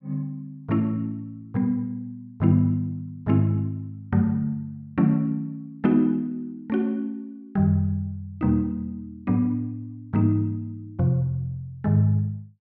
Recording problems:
none

